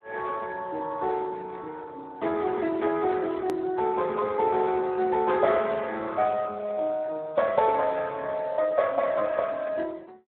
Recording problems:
telephone audio; 280 Hz to 2.6 kHz, Speex
hard cut with a click; at 3.5 s

